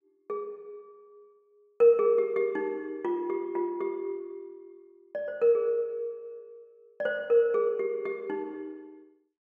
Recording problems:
none

